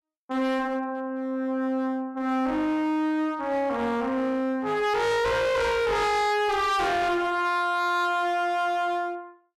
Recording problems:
distorted audio; hard clipping, uneven, signal-to-distortion ratio 5 dB

